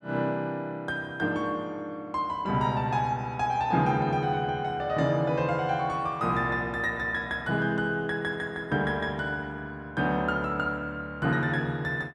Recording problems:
none

